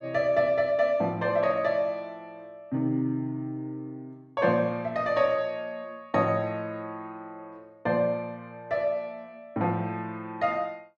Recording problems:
none

